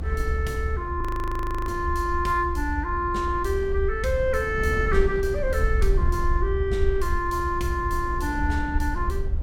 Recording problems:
low-frequency rumble; below 72 Hz, SNR 3 dB
wind on the microphone; below 280 Hz, SNR 12 dB
frozen audio; at 1 s for 0.5 s

